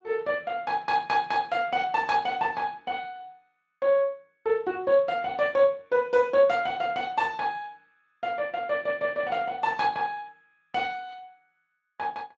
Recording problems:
codec artefacts; Speex, log-spectral distance 3 dB, nothing above 7.6 kHz

